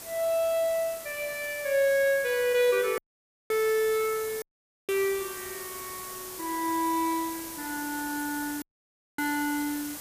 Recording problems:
background hiss; slope -2 dB per octave, SNR 10 dB
dropout; at 3 s for 0.5 s, at 4.5 s and at 8.5 s for 0.5 s

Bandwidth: 15 kHz